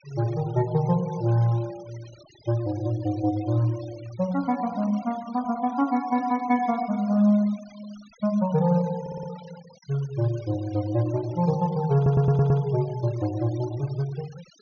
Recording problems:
treble cut off; nothing above 6.5 kHz
denoising artefacts; signal-to-artefact ratio 23 dB
audio stuttering; at 9 s and at 12 s

